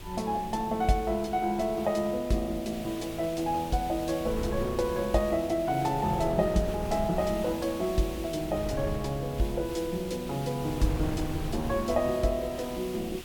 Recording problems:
background hiss; SNR 16 dB
wind on the microphone; below 230 Hz, SNR 12 dB

